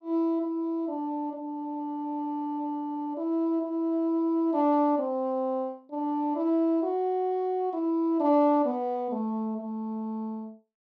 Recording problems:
none

